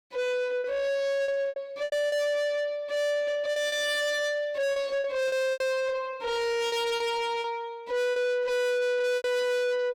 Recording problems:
distortion; soft clipping, signal-to-distortion ratio 7 dB
lost packets; 8% of the sound replaced, filled with repeated pitch periods

